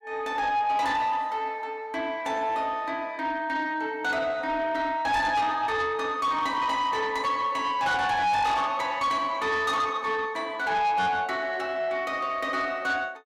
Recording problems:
distortion; soft clipping, signal-to-distortion ratio 10 dB

